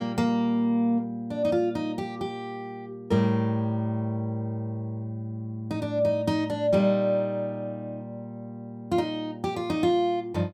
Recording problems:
none

